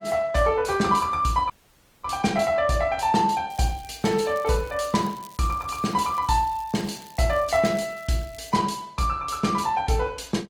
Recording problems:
lossy compression; Opus, log-spectral distance 3 dB, nothing above 18.9 kHz
dropout; at 1.5 s for 0.5 s
crackle; from 3.5 to 8.5 s; loose cable, SNR 25 dB

